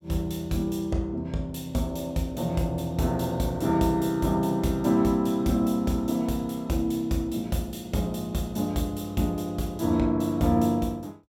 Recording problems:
none

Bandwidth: 17 kHz